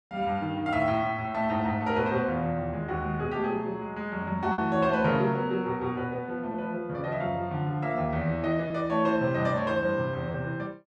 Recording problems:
packet loss; 1.1% of the sound replaced, filled with repeated pitch periods

